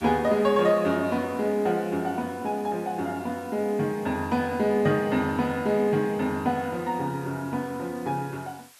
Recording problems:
hiss; slope +2 dB per octave, SNR 25 dB

